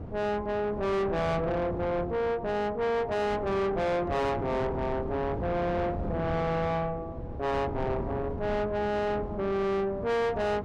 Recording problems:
distorted audio; soft clipping, signal-to-distortion ratio 6 dB
wind noise; below 450 Hz, SNR 8 dB

